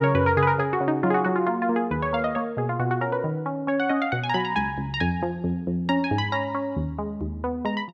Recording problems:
none

